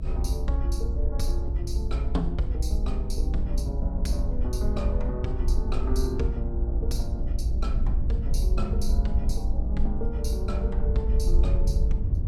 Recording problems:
rumble; below 58 Hz, SNR -6 dB

